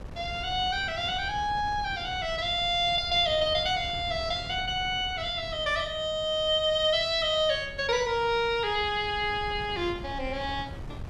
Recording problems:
wind on the microphone; below 190 Hz, SNR 16 dB

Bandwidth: 14 kHz